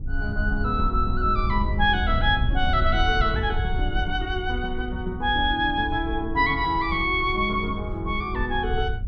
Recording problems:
wind noise; below 78 Hz, SNR 5 dB

